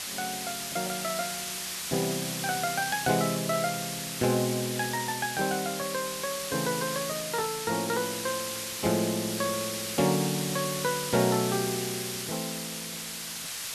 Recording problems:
background hiss; slope +2 dB per octave, SNR 3 dB

